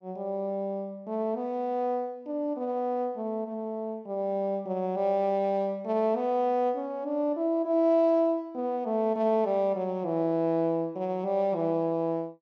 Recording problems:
none

